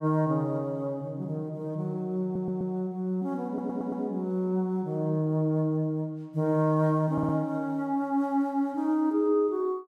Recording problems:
audio stuttering; at 2 s, at 3.5 s and at 7 s

